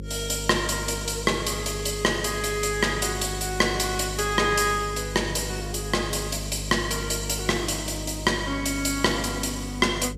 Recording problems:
hum; 50 Hz, harmonics up to 550 Hz, SNR 10 dB

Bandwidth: 14.5 kHz